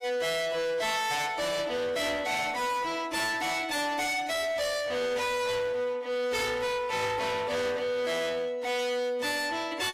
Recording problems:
lossy compression; AAC, log-spectral distance 3 dB, nothing above 15.1 kHz
distortion; hard clipping, uneven, signal-to-distortion ratio 7 dB

